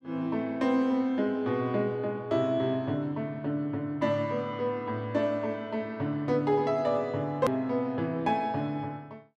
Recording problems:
click at an edit; at 7.5 s

